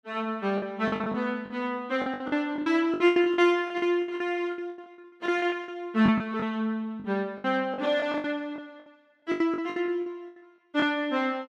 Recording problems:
packet loss; 17% of the sound replaced, filled with the last packet

